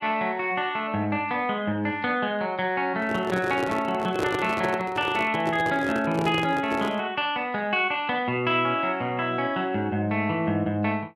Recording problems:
microphone handling noise; from 3 to 7 s; peak +1 dB vs average level

